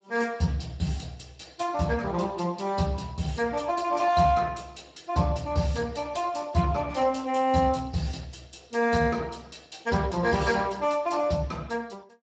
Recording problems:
lossy codec; Speex, log-spectral distance 4 dB, nothing above 7.6 kHz

